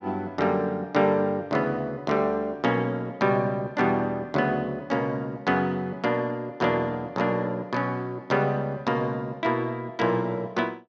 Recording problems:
none

